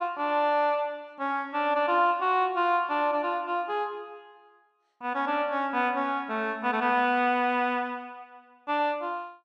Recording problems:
none

